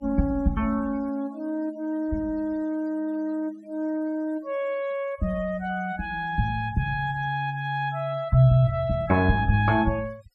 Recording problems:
denoising artefacts; signal-to-artefact ratio 26 dB

